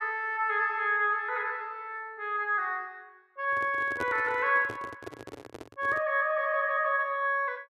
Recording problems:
handling noise; from 3.5 to 6 s; peak -4 dB vs average level

